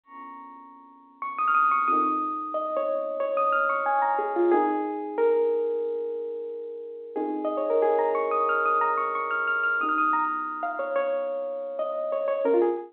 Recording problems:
phone line; 220 Hz to 3.7 kHz, G.711

